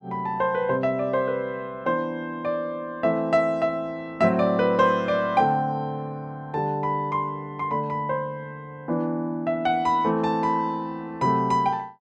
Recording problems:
none

